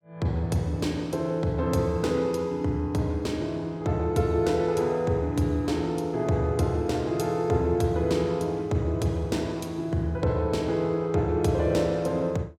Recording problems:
none

